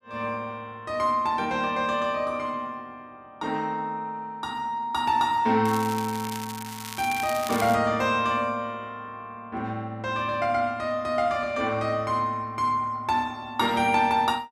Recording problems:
crackle; from 5.5 to 7.5 s; loose cable, SNR 11 dB

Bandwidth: 15 kHz